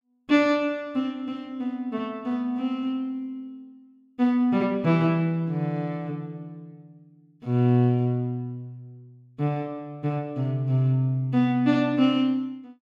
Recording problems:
none

